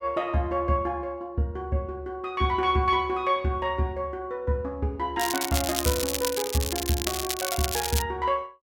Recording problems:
crackling; from 5 to 8 s; loose cable, SNR 2 dB

